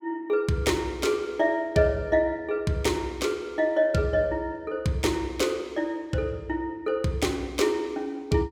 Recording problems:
none

